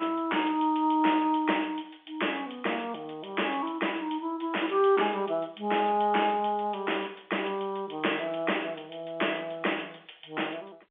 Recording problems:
phone line; 300 Hz to 3.4 kHz, G.711

